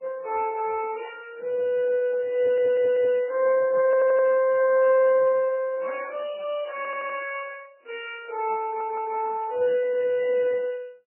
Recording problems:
lossy compression; Speex, then MP3, log-spectral distance 3 dB, nothing above 2.9 kHz
audio stuttering; 4 times, first at 2.5 s

